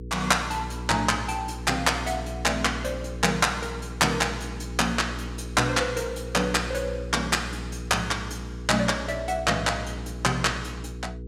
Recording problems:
hum; 60 Hz, harmonics up to 480 Hz, SNR 10 dB

